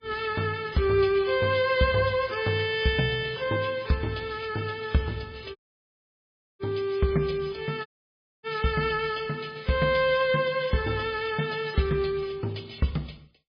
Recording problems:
lossy codec; MP3, log-spectral distance 5 dB
audio cutting out; at 5.5 s for 1 s and at 8 s for 0.5 s

